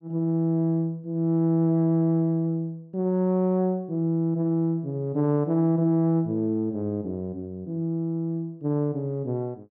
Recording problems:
none

